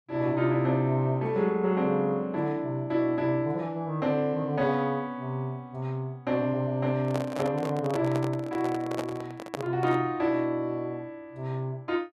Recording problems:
microphone handling noise; from 7 to 10 s; peak 0 dB vs average level

